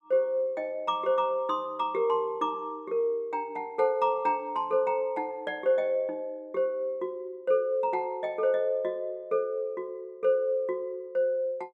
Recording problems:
none

